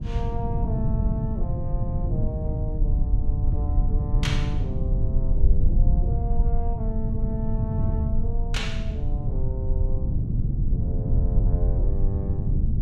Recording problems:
low-frequency rumble; below 58 Hz, SNR -6 dB
wind noise; below 160 Hz, SNR -5 dB

